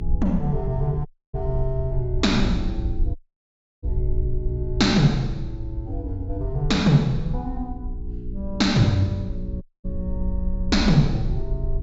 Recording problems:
treble cut off; nothing above 8 kHz
electrical hum; 60 Hz, harmonics up to 420 Hz, SNR 14 dB
rumble; below 60 Hz, SNR 8 dB
dropout; at 1 s, at 3 s for 0.5 s and at 9.5 s

